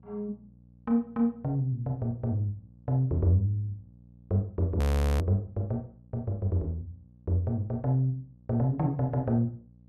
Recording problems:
mains hum; 60 Hz, harmonics up to 540 Hz, SNR 26 dB
audio freezing; at 5 s

